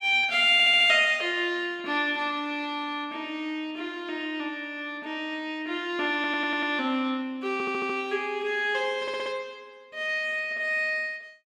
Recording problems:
audio stuttering; 4 times, first at 0.5 s

